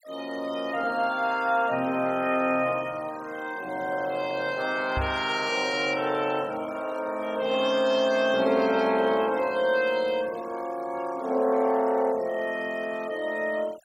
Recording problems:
noise reduction artefacts; signal-to-artefact ratio 21 dB
microphone thump; at 5 s; peak -2 dB vs average level

